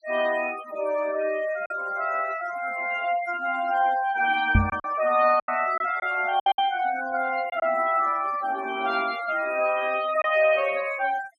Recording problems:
denoising artefacts; signal-to-artefact ratio 15 dB
lost packets; 4% of the sound replaced, filled with silence
microphone thump; at 4.5 s; peak +7 dB vs average level

